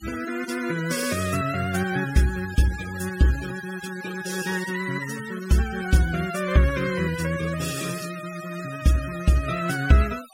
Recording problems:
noise reduction artefacts; signal-to-artefact ratio 14 dB

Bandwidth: 16 kHz